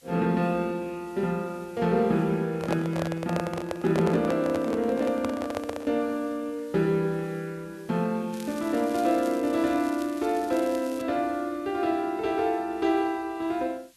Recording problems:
hiss; slope +2 dB per octave, SNR 28 dB
microphone handling noise; from 2.5 to 6 s; peak +1 dB vs average level
crackle; from 8.5 to 11 s; loose cable, SNR 19 dB

